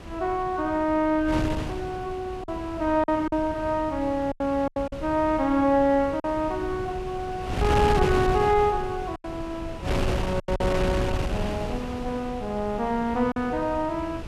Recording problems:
wind noise; below 480 Hz, SNR 7 dB
lost packets; 4% of the sound replaced, filled with silence

